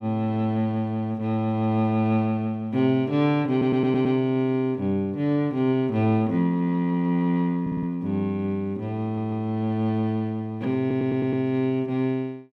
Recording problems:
audio stuttering; 4 times, first at 3.5 s

